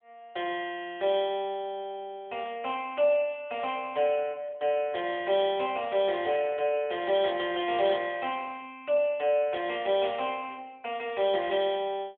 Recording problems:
phone line; 280 Hz to 3.7 kHz, AMR-NB

